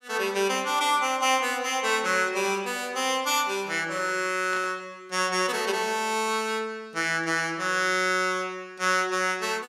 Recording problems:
static burst; at 2.5 s and at 4.5 s; peak -9 dB vs average level

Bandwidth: 15.5 kHz